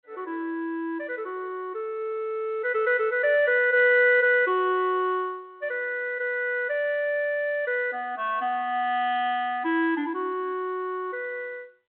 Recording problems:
phone line; 260 Hz to 3.4 kHz, G.726

